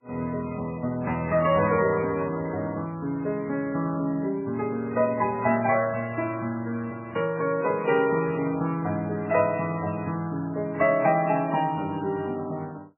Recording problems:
lossy compression; MP3, then AAC, log-spectral distance 2 dB, nothing above 2.7 kHz

